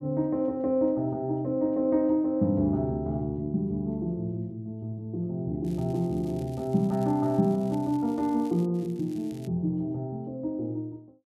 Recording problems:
crackling; from 5.5 to 8.5 s and at 8.5 s; loose cable, SNR 27 dB

